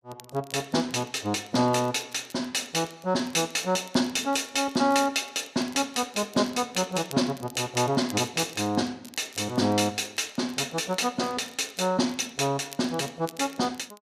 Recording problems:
crackling; vinyl, SNR 23 dB

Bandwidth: 14.5 kHz